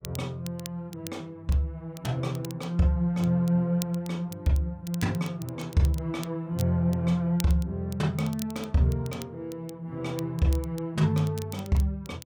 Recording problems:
crackle; vinyl, SNR 18 dB

